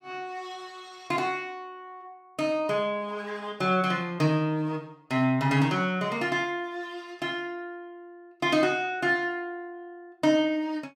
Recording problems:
none

